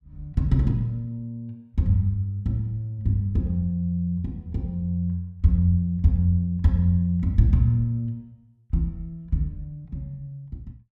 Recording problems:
none

